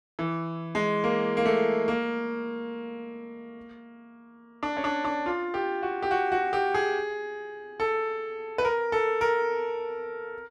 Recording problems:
none

